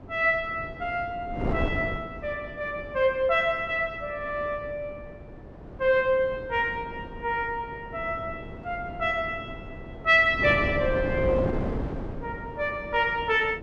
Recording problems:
wind noise; below 440 Hz, SNR 10 dB

